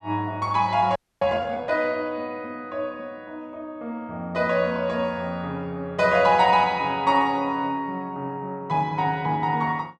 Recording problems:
frozen audio; at 1 s

